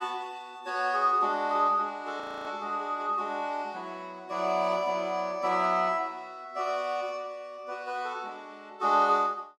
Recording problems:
frozen audio; at 2 s

